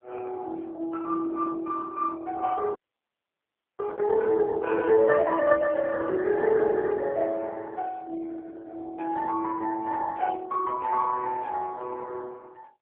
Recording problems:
telephone audio; 260 Hz to 2.2 kHz, AMR-NB
audio freezing; at 3 s for 1 s

